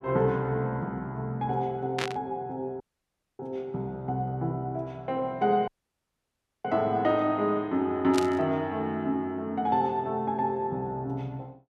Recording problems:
burst of static; at 2 s and at 8 s; peak +1 dB vs average level
audio cutting out; at 3 s for 0.5 s and at 5.5 s for 1 s

